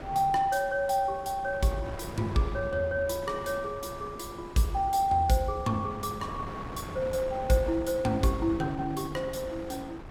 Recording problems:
wind on the microphone; below 840 Hz, SNR 13 dB

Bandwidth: 17 kHz